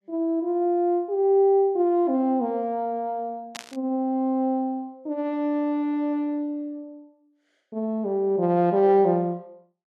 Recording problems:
burst of static; at 3.5 s; peak -7 dB vs average level

